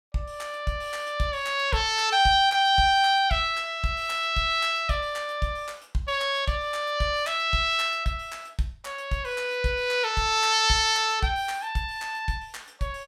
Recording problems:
none

